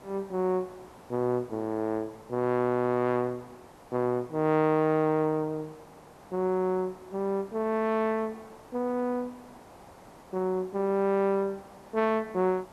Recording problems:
hiss; SNR 22 dB

